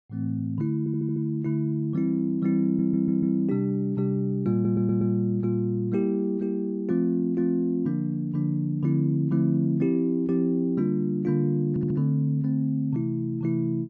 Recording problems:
stutter; 4 times, first at 1 s

